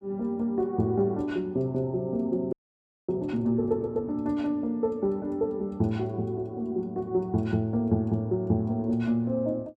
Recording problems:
frozen audio; at 2.5 s for 0.5 s

